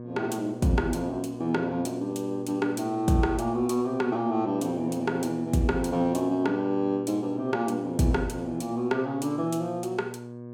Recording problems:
hum; 60 Hz, harmonics up to 1.2 kHz, SNR 12 dB

